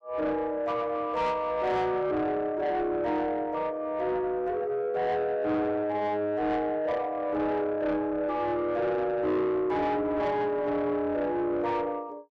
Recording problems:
distorted audio; soft clipping, signal-to-distortion ratio 11 dB

